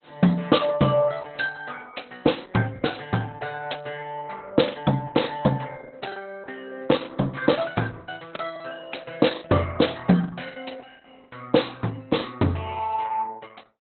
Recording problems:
lossy codec; Opus, log-spectral distance 6 dB, nothing above 4.1 kHz
lost packets; 6% of the sound replaced, filled with the last packet

